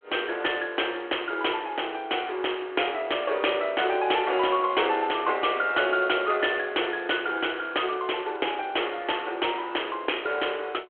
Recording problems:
telephone audio; 300 Hz to 3.3 kHz, G.726

